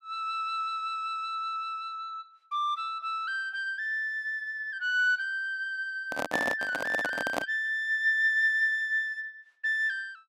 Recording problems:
handling noise; from 6 to 7.5 s; peak +3 dB vs average level

